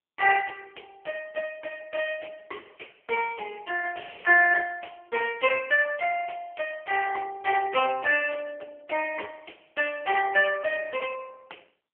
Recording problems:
telephone audio; 320 Hz to 3.1 kHz, AMR-NB

